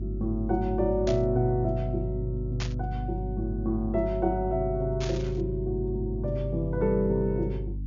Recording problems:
low-pass filter; nothing above 7.1 kHz
electrical hum; 50 Hz, harmonics up to 300 Hz, SNR 5 dB
burst of static; at 1 s, at 2.5 s and at 5 s; peak -3 dB vs average level

